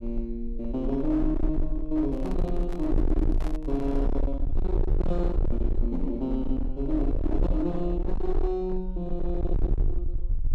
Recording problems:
distortion; hard clipping, signal-to-distortion ratio 6 dB
low-frequency rumble; below 46 Hz, SNR 1 dB
handling noise; from 2 to 4 s; peak -7 dB vs average level

